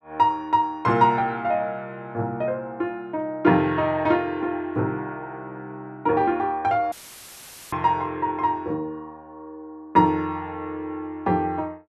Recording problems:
dropout; at 7 s for 1 s; filled with static

